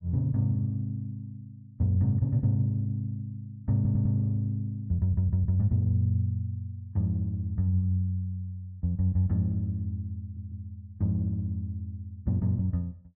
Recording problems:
stutter; at 4 s, at 5 s and at 10 s

